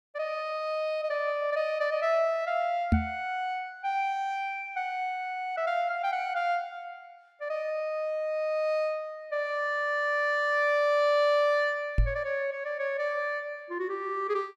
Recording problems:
microphone thump; at 3 s and at 12 s; peak +8 dB vs average level

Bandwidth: 14 kHz